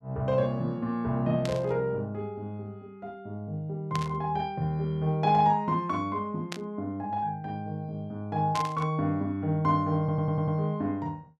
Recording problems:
static burst; 4 times, first at 1.5 s; peak -2 dB vs average level
stutter; at 10 s

